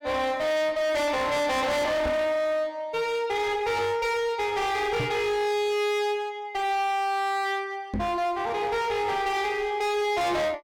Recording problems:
distorted audio; hard clipping, uneven, signal-to-distortion ratio 6 dB
microphone bump; at 2 s, at 5 s and at 8 s; peak 0 dB vs average level

